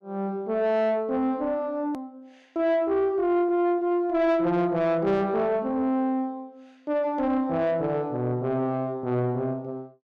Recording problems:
distortion; soft clipping, signal-to-distortion ratio 12 dB
click at an edit; at 2 s

